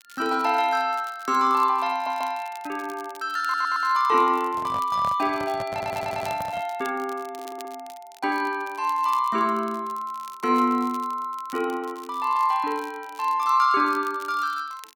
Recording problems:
crackling; vinyl, SNR 23 dB
stutter; 4 times, first at 2 s
microphone handling noise; from 4.5 to 6.5 s; peak -7 dB vs average level

